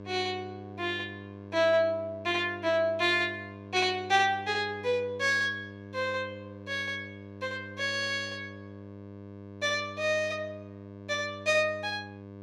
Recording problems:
hum; 50 Hz, harmonics up to 1.6 kHz, SNR 16 dB

